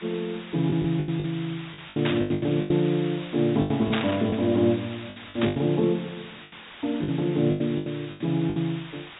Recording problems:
treble missing; nothing above 4 kHz
hiss; SNR 16 dB
lost packets; 13% of the sound replaced, filled with the last packet
static burst; at 2 s, at 4 s and at 5.5 s; peak +2 dB vs average level

